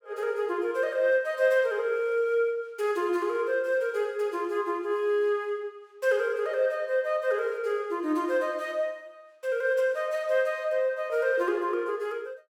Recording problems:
none

